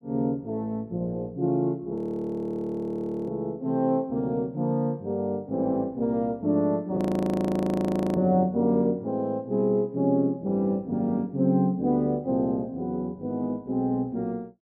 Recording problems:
frozen audio; at 2 s for 1.5 s and at 7 s for 1 s

